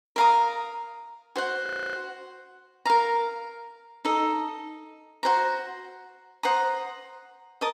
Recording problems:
audio freezing; at 1.5 s

